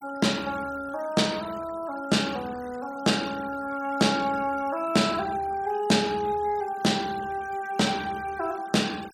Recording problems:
denoising artefacts; signal-to-artefact ratio 19 dB

